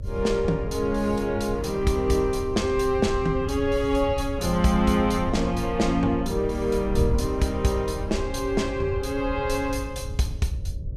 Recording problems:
electrical hum; 60 Hz, harmonics up to 600 Hz, SNR 27 dB
wind on the microphone; below 98 Hz, SNR 8 dB

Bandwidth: 14.5 kHz